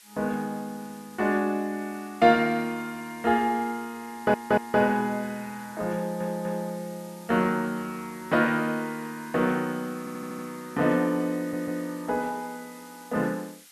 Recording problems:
background hiss; SNR 22 dB
audio stuttering; 4 times, first at 4 s

